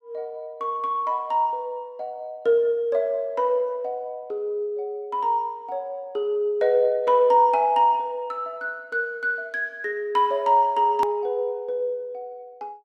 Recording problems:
click at an edit; at 11 s

